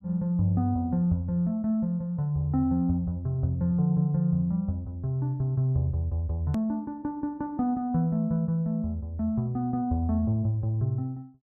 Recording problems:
click at an edit; at 6.5 s

